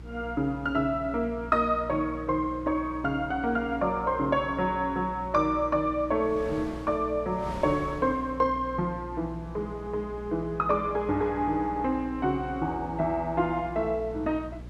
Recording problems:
electrical hum; 60 Hz, harmonics up to 360 Hz, SNR 16 dB
wind on the microphone; below 870 Hz, SNR 20 dB

